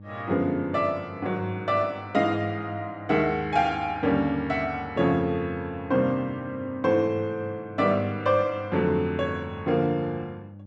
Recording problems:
hum; 50 Hz, harmonics up to 600 Hz, SNR 19 dB

